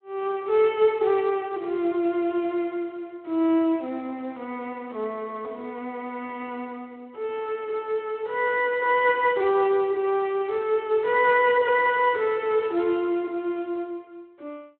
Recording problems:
phone line; 280 Hz to 3.4 kHz, Speex

